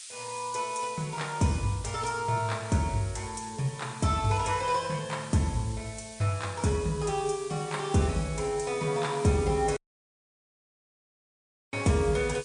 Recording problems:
codec artefacts; MP3, log-spectral distance 11 dB, nothing above 9.5 kHz
background hiss; SNR 16 dB
dropout; at 10 s for 2 s

